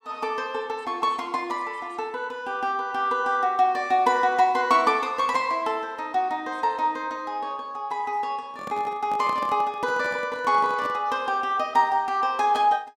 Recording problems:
handling noise; from 8.5 to 11 s; peak -8 dB vs average level

